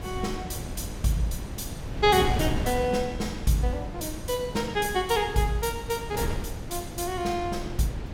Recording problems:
wind on the microphone; below 270 Hz, SNR 7 dB

